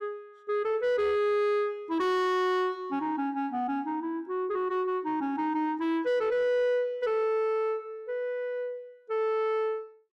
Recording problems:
distortion; soft clipping, signal-to-distortion ratio 6 dB

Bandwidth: 13.5 kHz